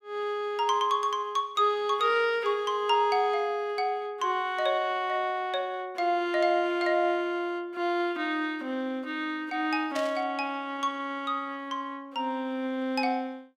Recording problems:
burst of static; at 10 s; peak -6 dB vs average level

